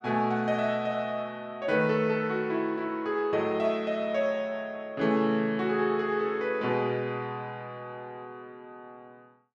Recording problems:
none

